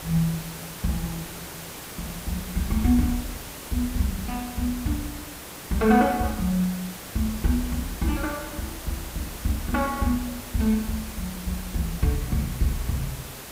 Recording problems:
background hiss; slope -3 dB per octave, SNR 10 dB

